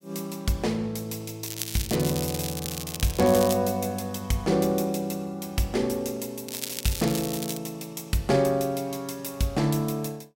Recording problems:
crackle; from 1.5 to 3.5 s and from 6.5 to 7.5 s; loose cable, SNR 7 dB

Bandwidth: 16 kHz